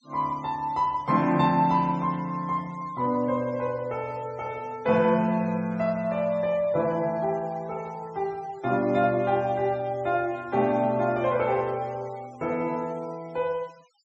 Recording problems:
treble cut off; nothing above 8 kHz
denoising artefacts; signal-to-artefact ratio 26 dB

